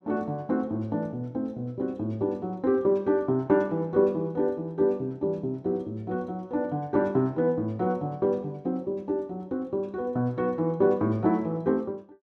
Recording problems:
none

